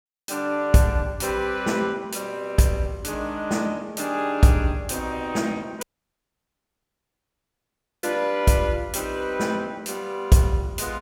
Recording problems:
dropout; at 6 s for 2 s

